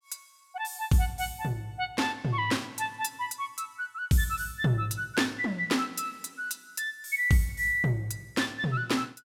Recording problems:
none

